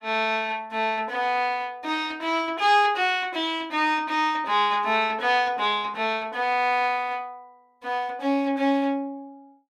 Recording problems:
none

